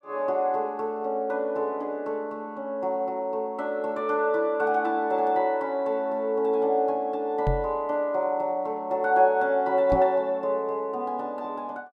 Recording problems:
microphone bump; at 7.5 s and at 10 s; peak +2 dB vs average level

